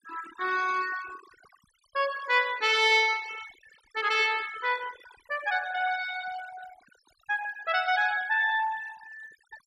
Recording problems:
noise reduction artefacts; signal-to-artefact ratio 17 dB

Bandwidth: 12.5 kHz